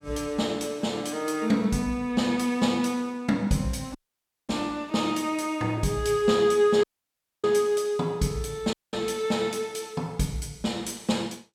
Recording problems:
audio cutting out; at 4 s for 0.5 s, at 7 s for 0.5 s and at 8.5 s

